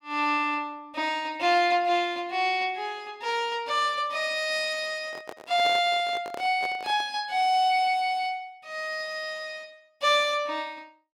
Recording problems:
microphone handling noise; from 5 to 7 s; peak -7 dB vs average level

